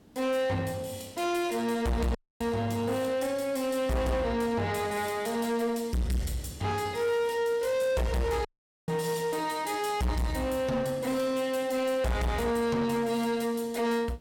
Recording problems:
distorted audio; soft clipping, signal-to-distortion ratio 8 dB
hiss; SNR 29 dB
dropout; at 2 s and at 8.5 s

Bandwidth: 17.5 kHz